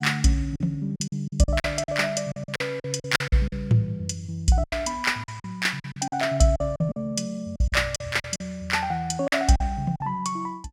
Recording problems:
packet loss; 12% of the sound replaced, filled with silence

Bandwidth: 16 kHz